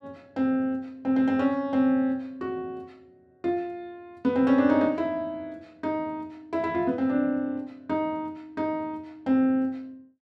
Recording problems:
none

